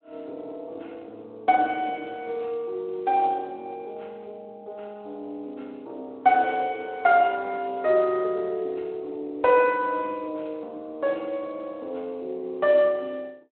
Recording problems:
phone line; 280 Hz to 3.6 kHz, Speex

